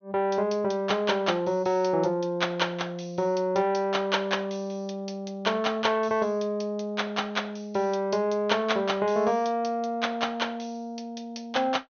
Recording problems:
treble missing; nothing above 6.5 kHz

